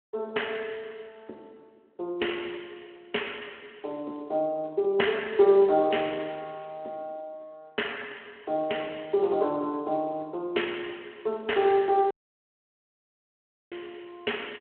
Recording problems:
phone line; 300 Hz to 3.2 kHz, Speex
dropout; at 12 s for 1.5 s

